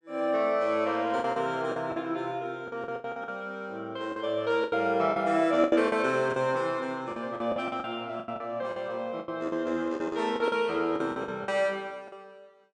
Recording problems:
lost packets; 13% of the sound replaced, filled with the last packet

